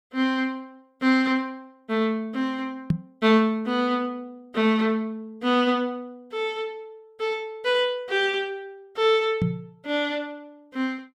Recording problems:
microphone bump; at 3 s and at 9.5 s; peak +6 dB vs average level

